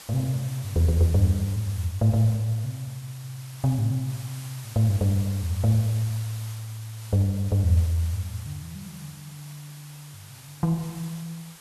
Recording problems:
hiss; slope 0 dB per octave, SNR 18 dB

